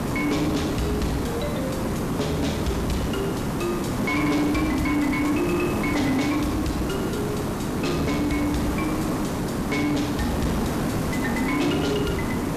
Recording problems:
distortion; soft clipping, signal-to-distortion ratio 9 dB
hiss; slope -7 dB per octave, SNR 1 dB

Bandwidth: 14.5 kHz